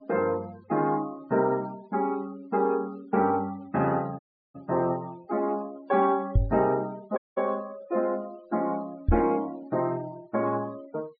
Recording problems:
treble missing; nothing above 4.9 kHz
noise reduction artefacts; signal-to-artefact ratio 24 dB
audio cutting out; at 4 s and at 7 s
microphone bump; at 6.5 s and at 9 s; peak +9 dB vs average level

